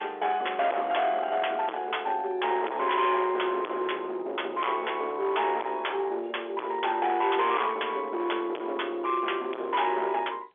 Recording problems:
telephone audio; 300 Hz to 3.5 kHz, G.711
distortion; hard clipping, uneven, signal-to-distortion ratio 5 dB

